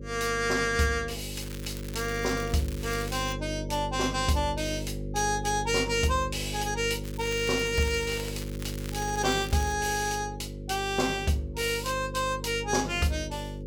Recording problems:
hum; 50 Hz, harmonics up to 550 Hz, SNR 8 dB
crackling; from 1.5 to 3.5 s and from 7 to 10 s; loose cable, SNR 15 dB

